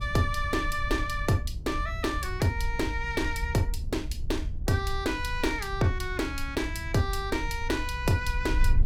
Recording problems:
wind noise; below 72 Hz, SNR 6 dB

